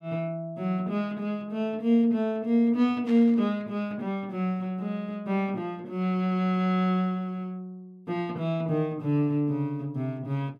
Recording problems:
static burst; at 3 s; peak -13 dB vs average level

